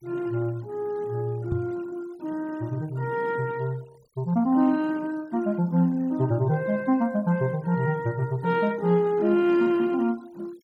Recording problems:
denoising artefacts; signal-to-artefact ratio 27 dB
knock on the microphone; at 1.5 s; peak +2 dB vs average level

